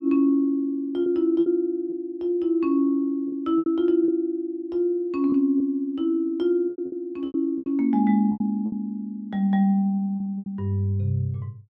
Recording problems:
packet loss; 8% of the sound replaced, filled with repeated pitch periods

